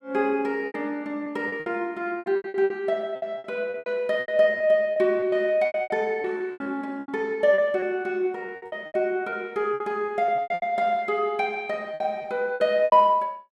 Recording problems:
lost packets; 16% of the sound replaced, filled with repeated pitch periods

